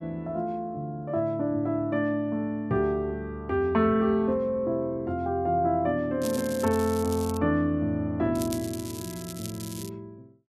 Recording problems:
crackle; from 6 to 7.5 s and from 8.5 to 10 s; loose cable, SNR 13 dB

